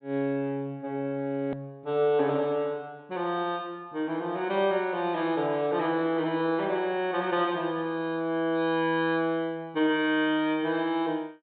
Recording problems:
treble cut off; nothing above 4 kHz
edit click; at 1.5 s

